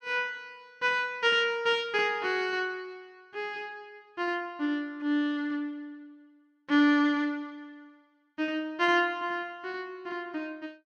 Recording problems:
none

